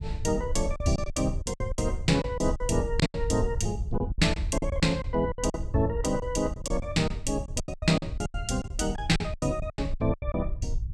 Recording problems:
rumble; below 78 Hz, SNR 6 dB
lost packets; 16% of the sound replaced, filled with silence

